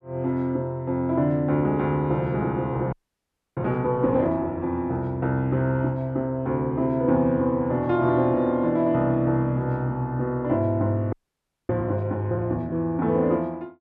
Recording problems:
audio freezing; at 3 s for 0.5 s and at 11 s for 0.5 s

